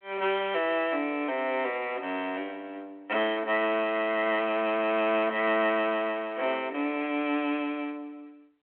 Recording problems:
phone line; 260 Hz to 3.5 kHz, G.726

